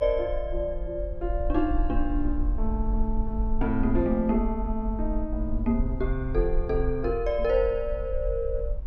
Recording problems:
rumble; below 48 Hz, SNR 4 dB

